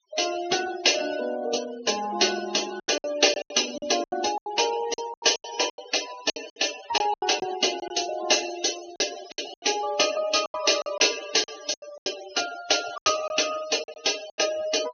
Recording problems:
low-pass filter; nothing above 6.5 kHz
noise reduction artefacts; signal-to-artefact ratio 12 dB
lost packets; 12% of the sound replaced, filled with silence

